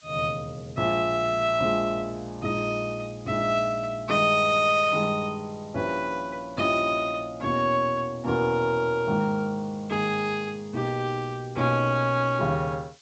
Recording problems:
lossy compression; G.722, log-spectral distance 3 dB, nothing above 7.6 kHz
hiss; slope +3 dB per octave, SNR 28 dB

